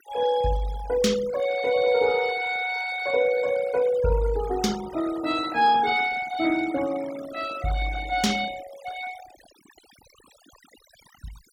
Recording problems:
noise reduction artefacts; signal-to-artefact ratio 16 dB

